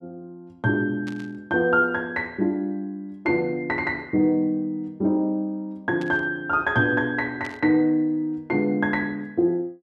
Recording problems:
burst of static; at 1 s, at 6 s and at 7.5 s; peak -11 dB vs average level

